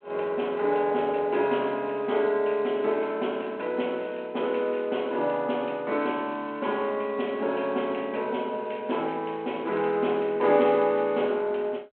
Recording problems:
phone line; 260 Hz to 3.3 kHz, G.726

